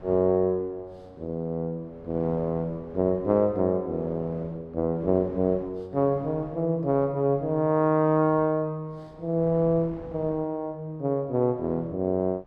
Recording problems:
wind on the microphone; below 590 Hz, SNR 22 dB

